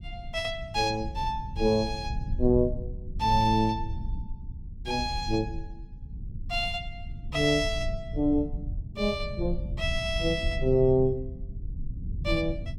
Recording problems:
rumble; below 90 Hz, SNR 9 dB

